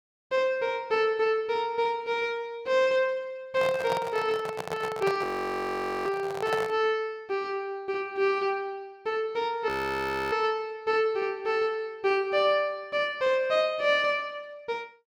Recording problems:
handling noise; from 3.5 to 7 s; peak 0 dB vs average level
audio freezing; at 5 s for 1 s and at 9.5 s for 0.5 s

